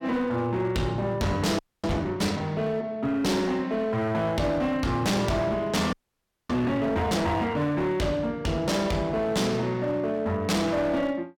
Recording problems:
distortion; hard clipping, signal-to-distortion ratio 8 dB
frozen audio; at 1.5 s and at 6 s for 0.5 s

